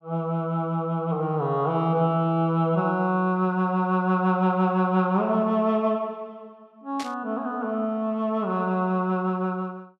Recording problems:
static burst; at 7 s; peak -8 dB vs average level

